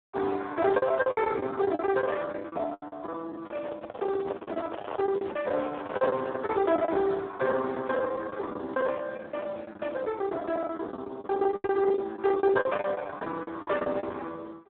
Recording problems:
phone line; 280 Hz to 3.6 kHz, Speex
packet loss; 18% of the sound replaced, filled with the last packet
handling noise; from 3.5 to 6.5 s; peak -3 dB vs average level

